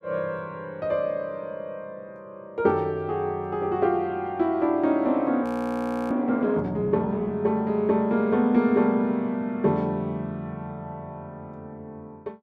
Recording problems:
frozen audio; at 5.5 s for 0.5 s

